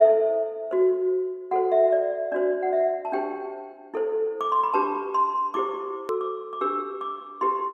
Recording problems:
click at an edit; at 6 s

